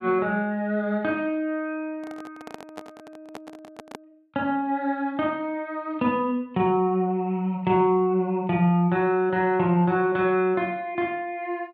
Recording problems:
microphone handling noise; from 2 to 4 s; peak -9 dB vs average level

